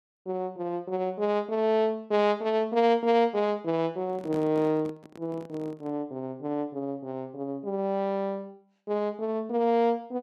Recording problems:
microphone handling noise; from 4 to 6 s; peak -7 dB vs average level

